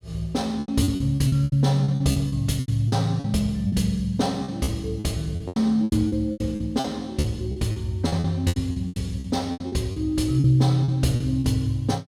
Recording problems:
packet loss; 16% of the sound replaced, filled with repeated pitch periods

